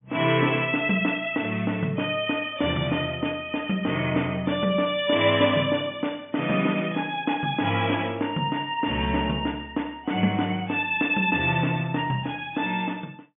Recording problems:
treble missing; nothing above 3.5 kHz

